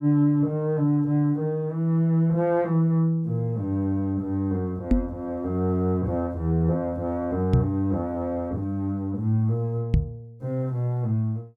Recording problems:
knock on the microphone; at 5 s, at 7.5 s and at 10 s; peak +8 dB vs average level

